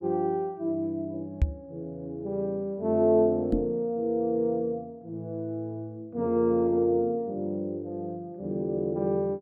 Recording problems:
microphone bump; at 1.5 s and at 3.5 s; peak +8 dB vs average level

